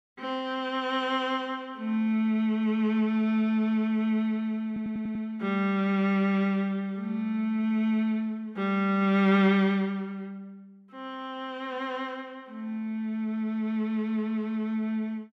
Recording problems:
audio stuttering; at 4.5 s

